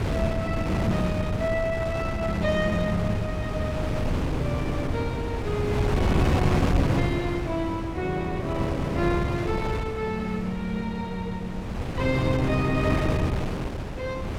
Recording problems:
wind on the microphone; below 390 Hz, SNR 0 dB

